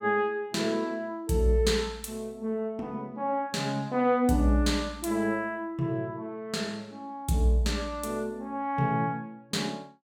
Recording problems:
none

